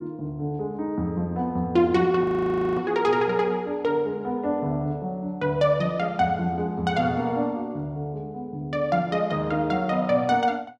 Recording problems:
frozen audio; at 2 s for 0.5 s

